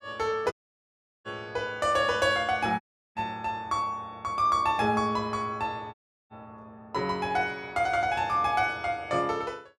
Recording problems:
audio cutting out; at 0.5 s for 0.5 s, at 3 s and at 6 s

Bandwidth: 15 kHz